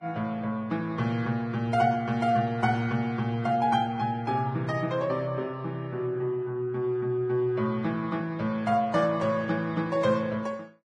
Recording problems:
codec artefacts; Vorbis, log-spectral distance 2 dB, nothing above 10.1 kHz

